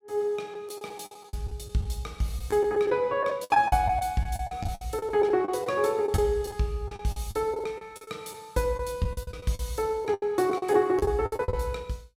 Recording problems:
packet loss; 14% of the sound replaced, filled with the last packet

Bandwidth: 16.5 kHz